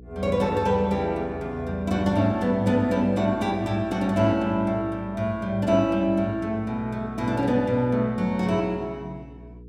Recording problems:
electrical hum; 60 Hz, harmonics up to 480 Hz, SNR 20 dB

